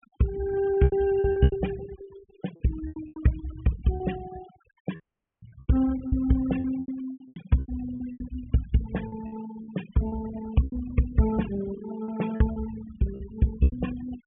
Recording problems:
treble missing; nothing above 3.3 kHz
noise reduction artefacts; signal-to-artefact ratio 17 dB
packet loss; 12% of the sound replaced, filled with repeated pitch periods
audio cutting out; at 5 s

